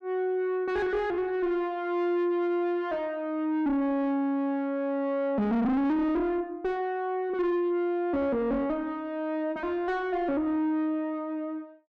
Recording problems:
distorted audio; soft clipping, signal-to-distortion ratio 7 dB

